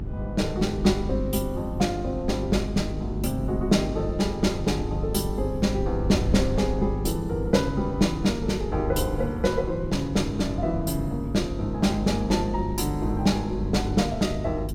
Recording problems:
electrical hum; 50 Hz, harmonics up to 400 Hz, SNR 7 dB
wind noise; below 110 Hz, SNR 11 dB

